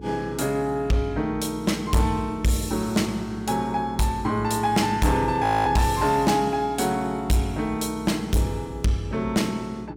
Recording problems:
distorted audio; hard clipping, signal-to-distortion ratio 11 dB
electrical hum; 60 Hz, harmonics up to 420 Hz, SNR 16 dB
frozen audio; at 5.5 s

